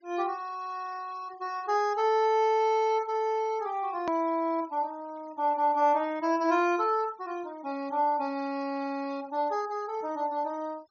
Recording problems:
treble missing; nothing above 6.7 kHz
noise reduction artefacts; signal-to-artefact ratio 26 dB
click at an edit; at 4 s

